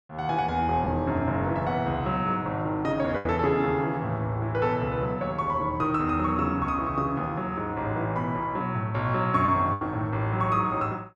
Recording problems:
lost packets; 1.8% of the sound replaced, filled with the last packet

